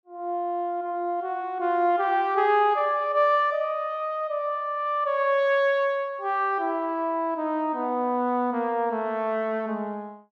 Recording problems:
none

